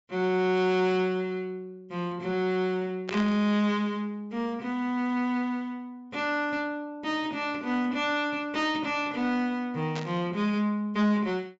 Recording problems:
treble missing; nothing above 8 kHz
distortion; soft clipping, signal-to-distortion ratio 11 dB
burst of static; at 3 s and at 10 s; peak -3 dB vs average level

